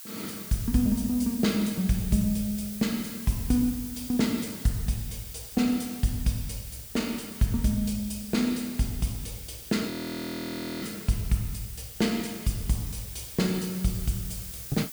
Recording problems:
hiss; slope +4 dB per octave, SNR 11 dB
frozen audio; at 10 s for 1 s

